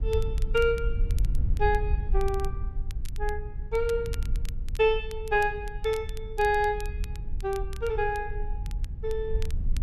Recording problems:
rumble; below 62 Hz, SNR 4 dB
crackling; vinyl, SNR 21 dB

